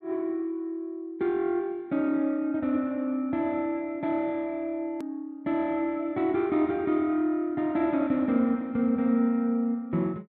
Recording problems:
click at an edit; at 5 s

